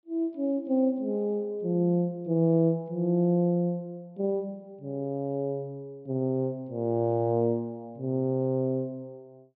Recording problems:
treble cut off; nothing above 5.5 kHz

